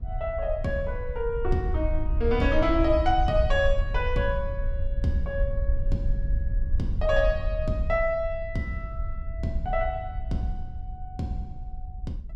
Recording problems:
wind noise; below 64 Hz, SNR 3 dB

